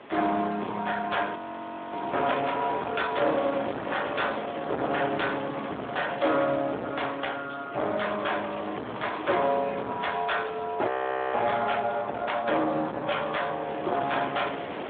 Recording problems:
phone line; 280 Hz to 3.6 kHz, Speex
distortion; hard clipping, uneven, signal-to-distortion ratio 8 dB
wind noise; below 1.6 kHz, SNR 11 dB
audio freezing; at 1.5 s for 0.5 s and at 11 s

